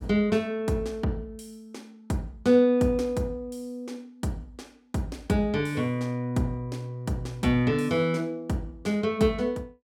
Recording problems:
none

